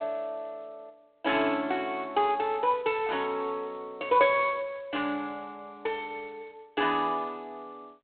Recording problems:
phone line; 260 Hz to 3.8 kHz, G.726

